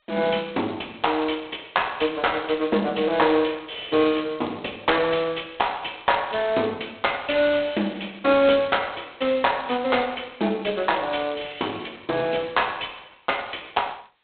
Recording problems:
telephone audio; 260 Hz to 4 kHz, G.726

